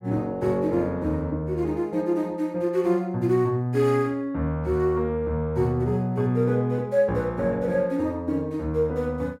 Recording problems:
none

